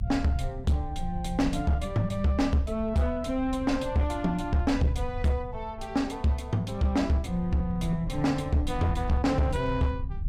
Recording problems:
distorted audio; hard clipping, signal-to-distortion ratio 12 dB
rumble; below 90 Hz, SNR 10 dB

